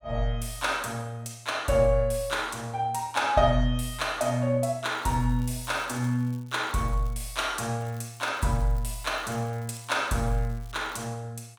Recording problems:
crackle; from 5 to 7.5 s and from 8 to 11 s; loose cable, SNR 26 dB

